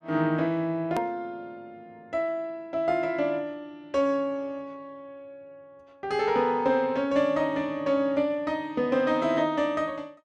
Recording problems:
edit click; at 1 s

